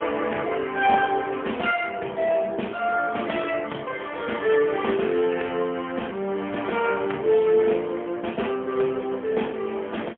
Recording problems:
phone line; 300 Hz to 3.1 kHz, AMR-NB, then MP3

